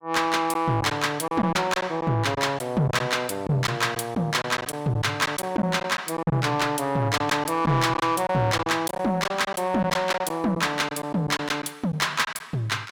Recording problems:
distortion; soft clipping, signal-to-distortion ratio 12 dB
packet loss; 8% of the sound replaced, filled with silence

